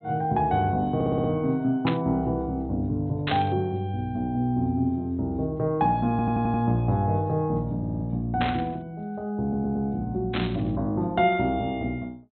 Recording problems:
low-pass filter; nothing above 4.1 kHz
audio stuttering; 4 times, first at 1 s
static burst; 4 times, first at 2 s; peak +1 dB vs average level

